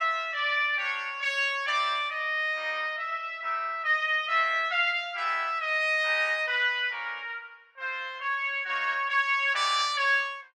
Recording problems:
none

